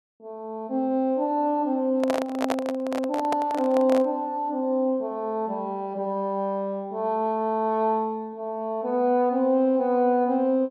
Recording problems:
microphone handling noise; from 2 to 4 s; peak +2 dB vs average level

